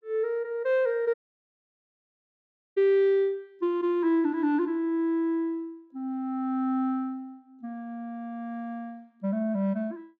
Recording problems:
audio cutting out; at 1 s for 1.5 s

